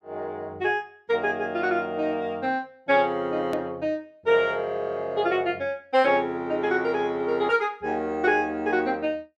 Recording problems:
edit click; at 3.5 s

